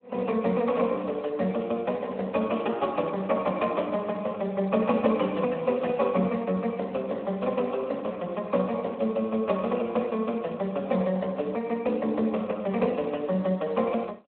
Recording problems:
phone line; 190 Hz to 3.3 kHz, Speex

